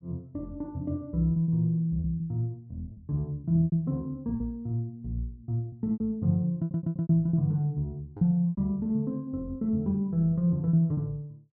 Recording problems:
lost packets; 8% of the sound replaced, filled with repeated pitch periods
stutter; at 6.5 s

